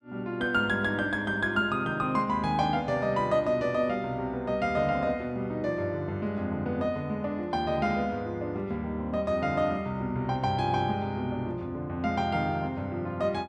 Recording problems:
none

